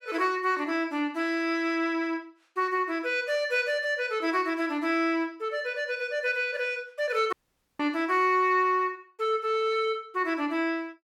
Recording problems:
dropout; at 7.5 s

